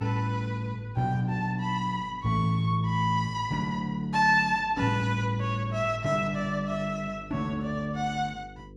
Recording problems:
electrical hum; 50 Hz, harmonics up to 500 Hz, SNR 22 dB

